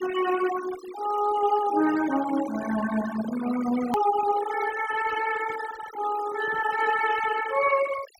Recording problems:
denoising artefacts; signal-to-artefact ratio 13 dB
hard cut with a click; at 4 s

